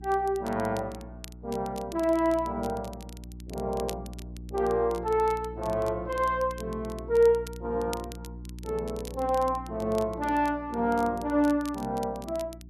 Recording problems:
electrical hum; 60 Hz, harmonics up to 360 Hz, SNR 15 dB
crackling; vinyl, SNR 21 dB

